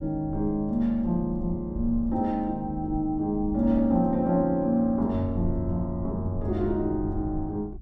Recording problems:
low-frequency rumble; below 92 Hz, SNR 12 dB

